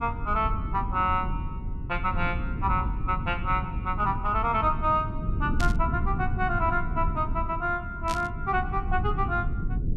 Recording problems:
low-frequency rumble; below 130 Hz, SNR 4 dB
static burst; at 5.5 s and at 8 s; peak -3 dB vs average level

